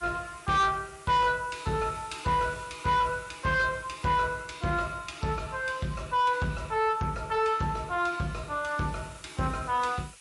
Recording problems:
lossy compression; MP3, log-spectral distance 7 dB, nothing above 11 kHz
distortion; soft clipping, signal-to-distortion ratio 12 dB
background hiss; SNR 23 dB

